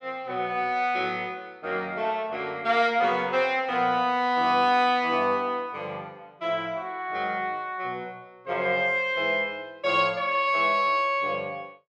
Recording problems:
none

